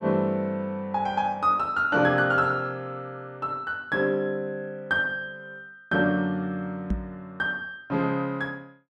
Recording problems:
microphone thump; at 7 s; peak +1 dB vs average level

